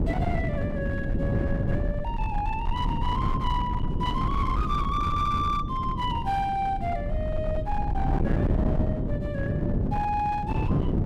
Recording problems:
distortion; hard clipping, uneven, signal-to-distortion ratio 11 dB
low-frequency rumble; below 76 Hz, SNR 5 dB
wind on the microphone; below 250 Hz, SNR 0 dB

